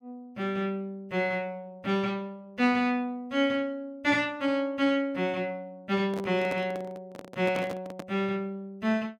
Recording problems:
handling noise; from 6 to 8 s; peak -3 dB vs average level

